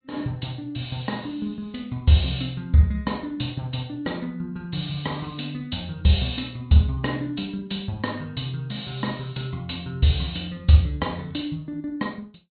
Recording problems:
low-pass filter; nothing above 4.2 kHz
lossy compression; MP3, log-spectral distance 3 dB

